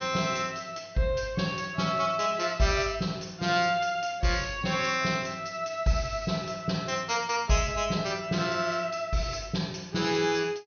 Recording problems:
low-pass filter; nothing above 6.4 kHz

